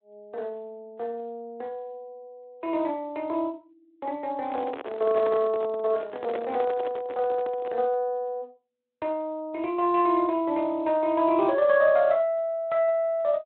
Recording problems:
telephone audio; 340 Hz to 3.7 kHz, Speex
handling noise; from 4.5 to 8 s; peak -4 dB vs average level

